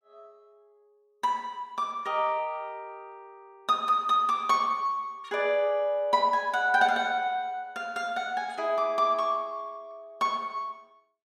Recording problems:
none

